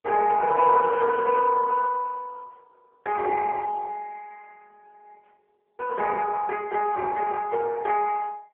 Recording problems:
phone line; 470 Hz to 2.1 kHz, AMR-NB

